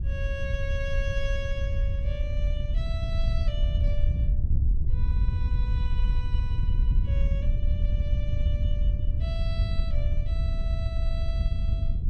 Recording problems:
wind noise; below 76 Hz, SNR -12 dB

